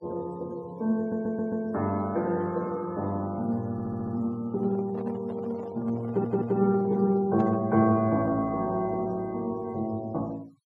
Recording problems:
denoising artefacts; signal-to-artefact ratio 26 dB
stutter; at 1 s, at 3.5 s and at 6 s
handling noise; from 4.5 to 7.5 s; peak -10 dB vs average level

